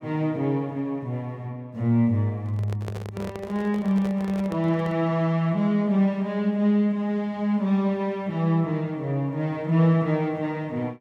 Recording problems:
handling noise; from 2.5 to 5 s; peak -7 dB vs average level

